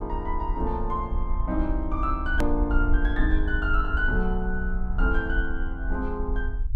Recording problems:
low-frequency rumble; below 52 Hz, SNR 0 dB
hard cut with a click; at 2.5 s

